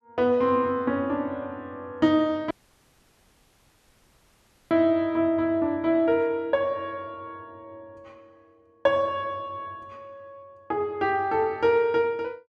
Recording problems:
audio cutting out; at 2.5 s for 2 s

